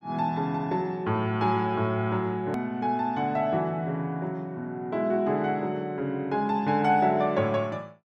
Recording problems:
click at an edit; at 2.5 s

